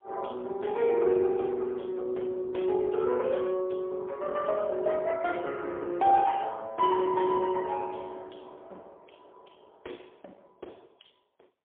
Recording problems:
telephone audio; 300 Hz to 3.4 kHz, AMR-NB, then MP3

